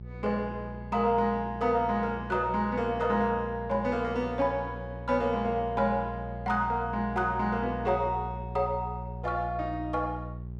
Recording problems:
hum; 60 Hz, harmonics up to 420 Hz, SNR 11 dB

